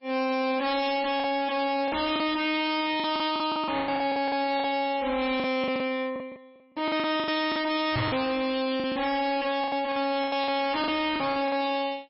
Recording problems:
codec artefacts; MP3, log-spectral distance 4 dB, nothing above 5.3 kHz
distortion; soft clipping, signal-to-distortion ratio 6 dB
packet loss; 12% of the sound replaced, filled with the last packet
knock on the microphone; at 8 s; peak +5 dB vs average level

